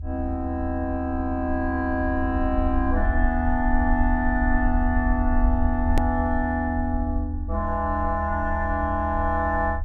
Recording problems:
rumble; below 78 Hz, SNR 3 dB
edit click; at 6 s

